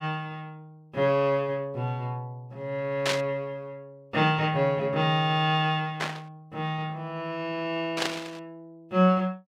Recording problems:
burst of static; at 3 s, at 6 s and at 8 s; peak +4 dB vs average level

